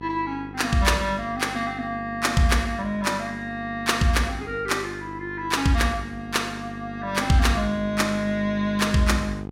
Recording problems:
hum; 50 Hz, harmonics up to 1.3 kHz, SNR 14 dB

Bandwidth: 16 kHz